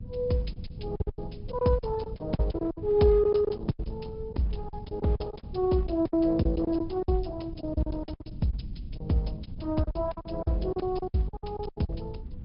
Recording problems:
low-pass filter; nothing above 5.2 kHz
codec artefacts; Opus, log-spectral distance 3 dB
rumble; below 140 Hz, SNR 13 dB
packet loss; 17% of the sound replaced, filled with silence

